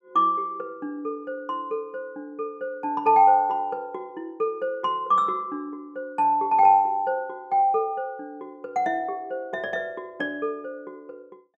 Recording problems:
none

